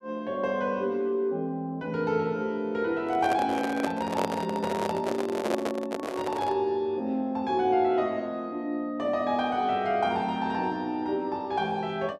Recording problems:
microphone handling noise; from 3 to 6.5 s; peak +3 dB vs average level

